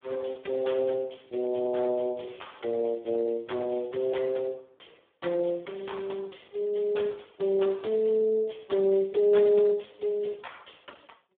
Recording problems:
telephone audio; 260 Hz to 3.6 kHz, Speex

